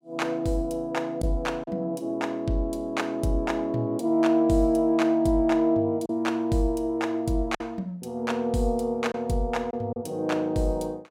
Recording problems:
packet loss; 1.7% of the sound replaced, filled with silence

